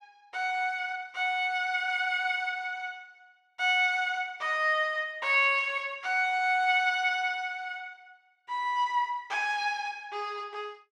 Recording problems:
none

